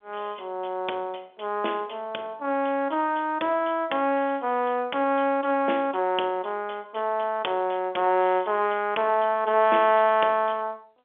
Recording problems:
telephone audio; 280 Hz to 3.5 kHz, G.711

